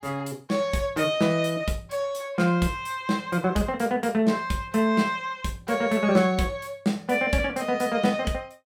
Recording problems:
none

